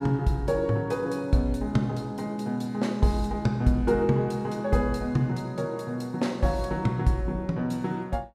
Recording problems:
none

